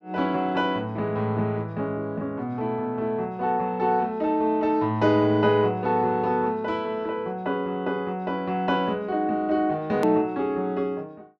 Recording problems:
hard cut with a click; at 10 s

